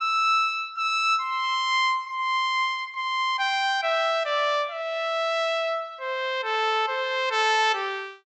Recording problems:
treble cut off; nothing above 7.9 kHz

